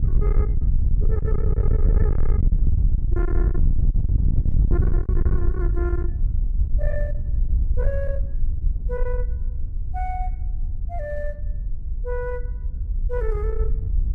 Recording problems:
distorted audio; soft clipping, signal-to-distortion ratio 7 dB
wind on the microphone; below 68 Hz, SNR -8 dB

